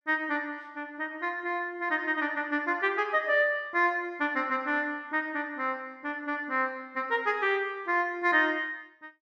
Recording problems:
none

